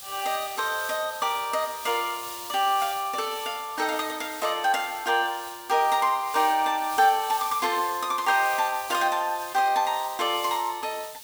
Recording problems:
background hiss; slope +3 dB per octave, SNR 13 dB

